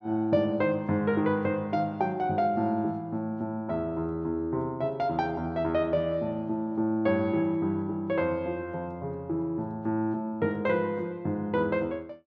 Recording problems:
none

